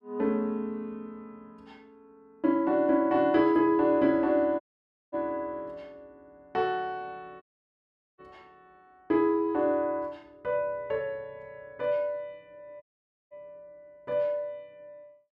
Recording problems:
dropout; at 4.5 s for 0.5 s, at 7.5 s for 1 s and at 13 s

